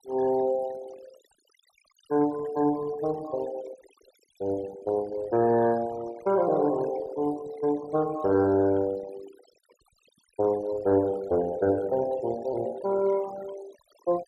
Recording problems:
noise reduction artefacts; signal-to-artefact ratio 19 dB

